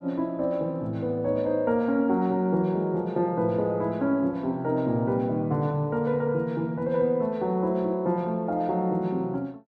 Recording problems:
none

